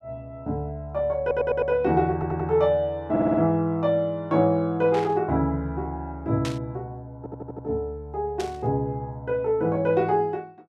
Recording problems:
stutter; 4 times, first at 1 s
burst of static; at 5 s, at 6.5 s and at 8.5 s; peak -6 dB vs average level

